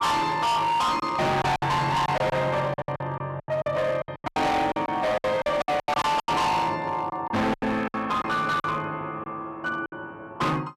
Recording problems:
distorted audio; hard clipping, signal-to-distortion ratio 6 dB
packet loss; 13% of the sound replaced, filled with silence
static burst; at 1 s; peak -13 dB vs average level

